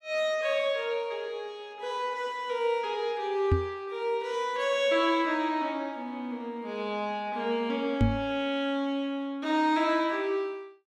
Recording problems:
microphone thump; at 3.5 s and at 8 s; peak +9 dB vs average level

